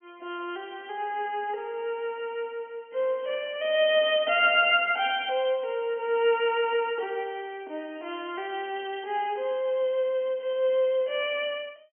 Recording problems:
low-pass filter; nothing above 3.2 kHz

